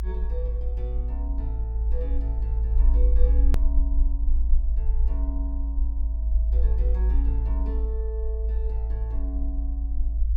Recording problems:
rumble; below 56 Hz, strongest tone 54 Hz, SNR -14 dB
hard cut with a click; at 3.5 s

